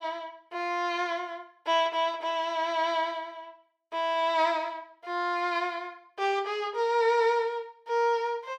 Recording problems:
none

